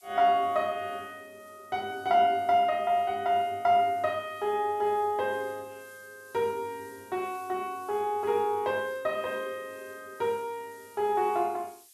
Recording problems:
hiss; slope +6 dB per octave, SNR 27 dB

